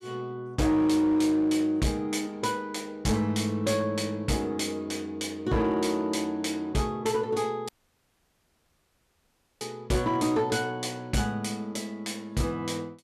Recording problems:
distorted audio; hard clipping, uneven, signal-to-distortion ratio 12 dB
dropout; at 7.5 s for 2 s

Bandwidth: 14 kHz